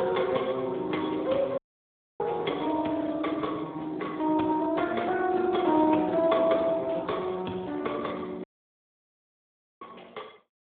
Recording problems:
telephone audio; 220 Hz to 2.1 kHz, Speex
audio cutting out; at 1.5 s for 0.5 s and at 8.5 s for 1.5 s

